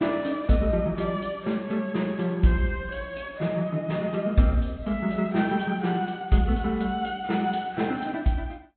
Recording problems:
treble cut off; nothing above 3.9 kHz
lossy codec; Vorbis, log-spectral distance 2 dB

